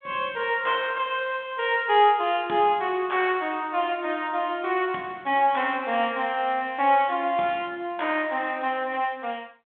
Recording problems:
telephone audio; 190 Hz to 3.5 kHz, G.726

